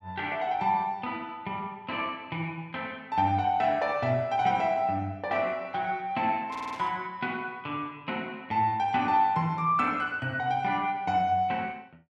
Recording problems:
audio stuttering; at 6.5 s
static burst; at 6.5 s; peak -13 dB vs average level

